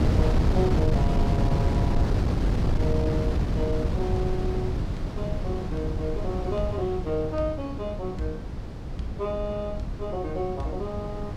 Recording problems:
wind on the microphone; below 190 Hz, SNR -4 dB

